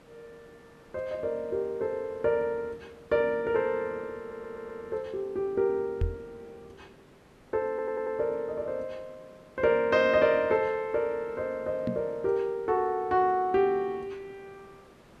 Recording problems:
background hiss; slope -6 dB per octave, SNR 27 dB
stutter; at 4 s and at 7.5 s
microphone bump; at 6 s and at 12 s; peak +2 dB vs average level

